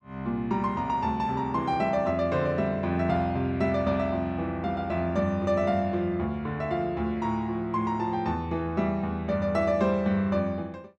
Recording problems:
none

